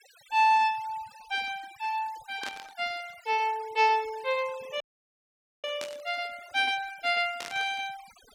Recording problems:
noise reduction artefacts; signal-to-artefact ratio 21 dB
burst of static; at 2.5 s, at 6 s and at 7.5 s; peak -5 dB vs average level
audio cutting out; at 5 s for 1 s

